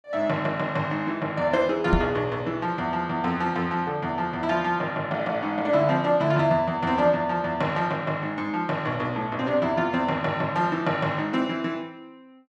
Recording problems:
microphone thump; at 2 s; peak +7 dB vs average level

